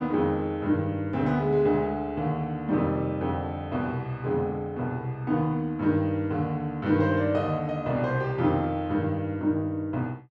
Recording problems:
none

